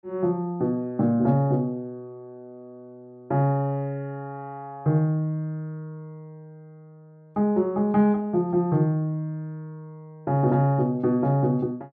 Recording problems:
none

